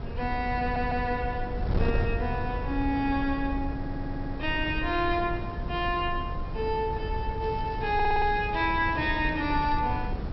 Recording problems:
treble missing; nothing above 5.6 kHz
wind on the microphone; below 140 Hz, SNR 5 dB
stutter; at 0.5 s, at 4 s and at 8 s
crackle; from 7.5 to 10 s; loose cable, SNR 26 dB

